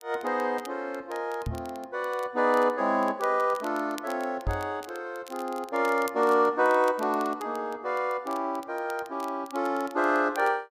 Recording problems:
crackle; vinyl, SNR 22 dB
microphone thump; at 1.5 s and at 4.5 s; peak 0 dB vs average level

